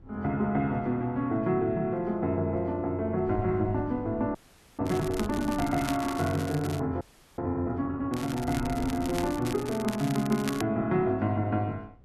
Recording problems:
wind on the microphone; below 150 Hz, SNR 18 dB
frozen audio; at 4.5 s and at 7 s
crackling; from 5 to 7 s and from 8 to 11 s; loose cable, SNR 13 dB

